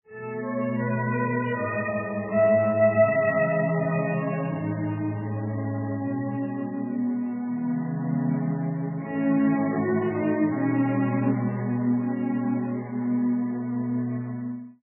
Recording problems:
lossy compression; MP3, log-spectral distance 2 dB, nothing above 2.7 kHz

